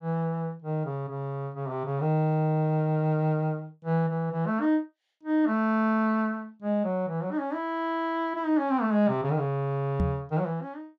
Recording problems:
microphone bump; at 10 s; peak +4 dB vs average level

